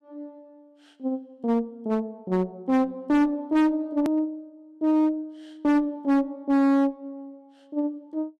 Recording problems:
distortion; hard clipping, uneven, signal-to-distortion ratio 9 dB
click at an edit; at 4 s

